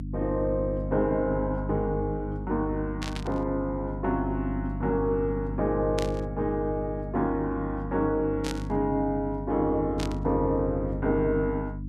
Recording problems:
hum; 50 Hz, harmonics up to 300 Hz, SNR 6 dB
static burst; 4 times, first at 3 s; peak -2 dB vs average level

